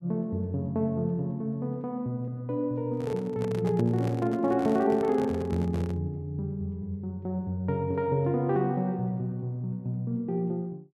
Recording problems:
handling noise; from 3 to 6 s; peak -5 dB vs average level

